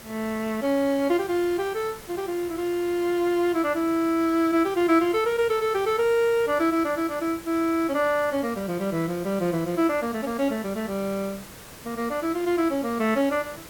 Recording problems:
background hiss; slope -3 dB per octave, SNR 17 dB

